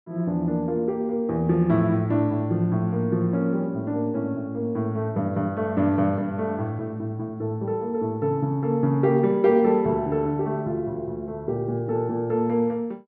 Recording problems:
none

